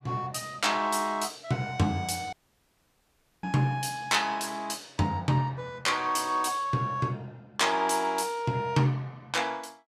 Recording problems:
audio cutting out; at 2.5 s for 1 s

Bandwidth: 14.5 kHz